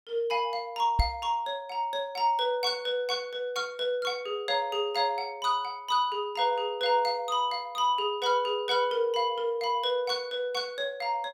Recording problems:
microphone bump; at 1 s; peak +6 dB vs average level

